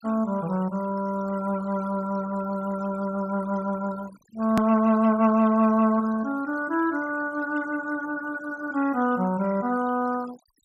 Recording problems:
denoising artefacts; signal-to-artefact ratio 20 dB
edit click; at 4.5 s

